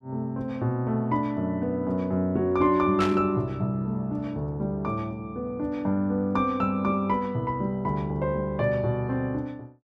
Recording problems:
burst of static; at 3 s; peak -1 dB vs average level

